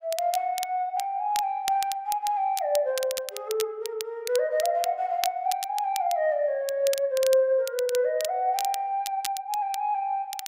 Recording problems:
crackling; vinyl, SNR 11 dB

